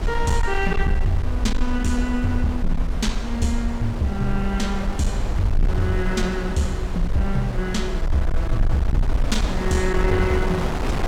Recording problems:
distortion; hard clipping, signal-to-distortion ratio 12 dB
low-frequency rumble; below 52 Hz, SNR 3 dB
wind on the microphone; below 930 Hz, SNR 7 dB

